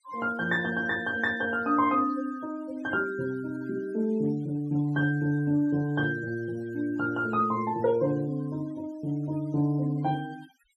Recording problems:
denoising artefacts; signal-to-artefact ratio 23 dB

